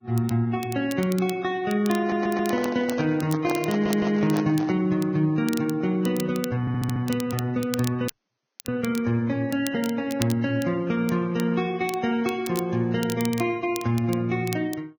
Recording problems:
codec artefacts; Vorbis, log-spectral distance 2 dB, nothing above 16 kHz
crackling; vinyl, SNR 16 dB
audio stuttering; at 2 s, at 3.5 s and at 6.5 s
microphone handling noise; from 2 to 5 s; peak -3 dB vs average level
audio cutting out; at 8 s for 0.5 s

